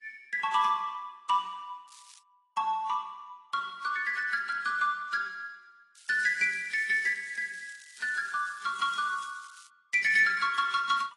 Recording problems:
codec artefacts; AAC, then AAC, log-spectral distance 5 dB
crackling; at 2 s and from 6 to 9.5 s; loose cable, SNR 23 dB

